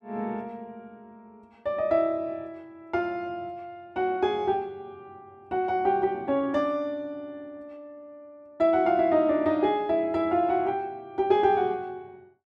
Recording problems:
none

